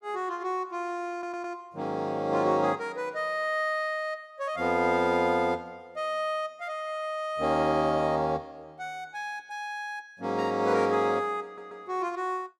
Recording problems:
audio stuttering; at 1 s and at 11 s

